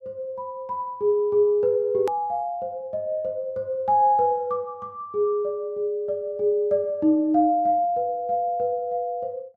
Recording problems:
hard cut with a click; at 2 s

